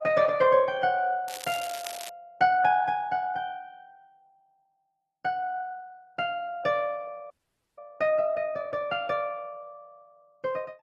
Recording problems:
codec artefacts; Opus, log-spectral distance 2 dB
crackling; at 1.5 s; loose cable, SNR 14 dB
audio freezing; at 7.5 s

